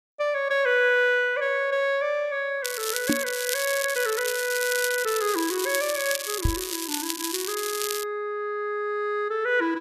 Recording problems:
crackling; from 2.5 to 8 s; loose cable, SNR 4 dB
knock on the microphone; at 3 s and at 6.5 s; peak +6 dB vs average level

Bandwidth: 14 kHz